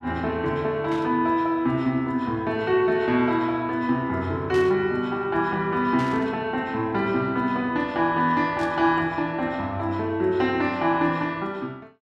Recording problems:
static burst; 4 times, first at 1 s; peak -11 dB vs average level

